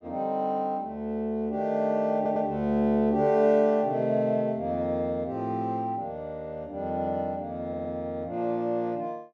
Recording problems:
stutter; at 2 s and at 7.5 s

